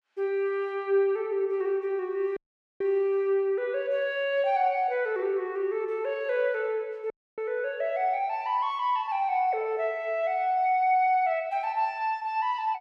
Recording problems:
audio cutting out; at 2.5 s and at 7 s

